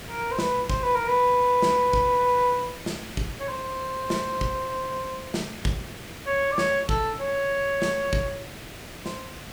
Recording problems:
hiss; SNR 14 dB

